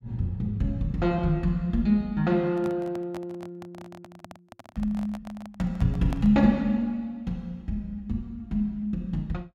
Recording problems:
handling noise; from 2.5 to 6.5 s; peak -6 dB vs average level

